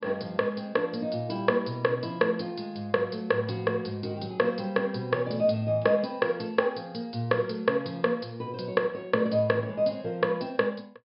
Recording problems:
treble cut off; nothing above 5.5 kHz

